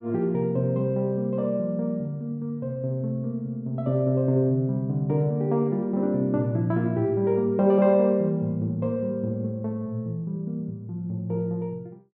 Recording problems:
none

